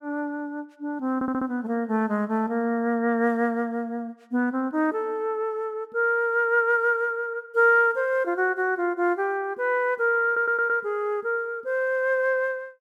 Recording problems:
audio stuttering; at 1 s and at 10 s

